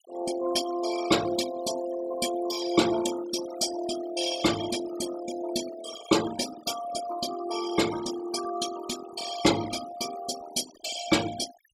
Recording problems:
denoising artefacts; signal-to-artefact ratio 10 dB

